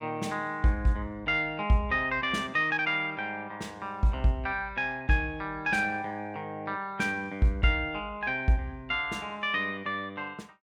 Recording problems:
none

